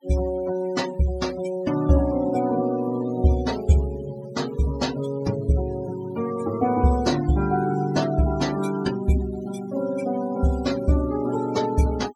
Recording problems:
noise reduction artefacts; signal-to-artefact ratio 16 dB

